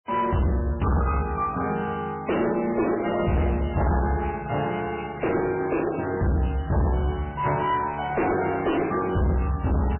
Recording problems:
codec artefacts; MP3, log-spectral distance 8 dB, nothing above 3 kHz
distorted audio; hard clipping, uneven, signal-to-distortion ratio 5 dB

